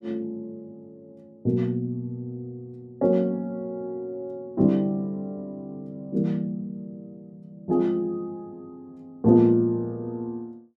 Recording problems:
none

